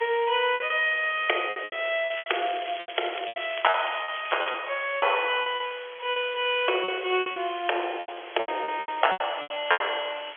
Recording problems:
phone line; 300 Hz to 3.4 kHz, G.711
background hiss; SNR 16 dB
lost packets; 16% of the sound replaced, filled with repeated pitch periods
crackling; from 2 to 4.5 s; loose cable, SNR 12 dB

